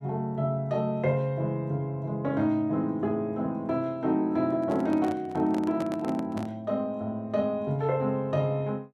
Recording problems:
microphone handling noise; from 4.5 to 6.5 s; peak -5 dB vs average level

